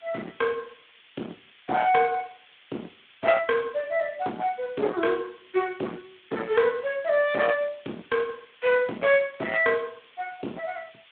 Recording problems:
phone line; 220 Hz to 3.5 kHz, Speex
distortion; hard clipping, signal-to-distortion ratio 10 dB
background hiss; SNR 27 dB

